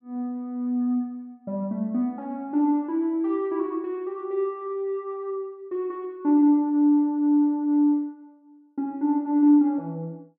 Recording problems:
none

